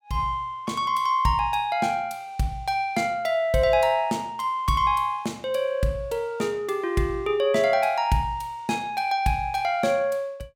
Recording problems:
none

